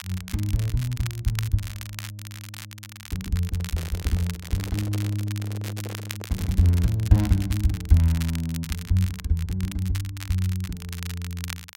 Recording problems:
crackle; vinyl, SNR 13 dB
handling noise; from 3.5 to 7 s; peak -9 dB vs average level

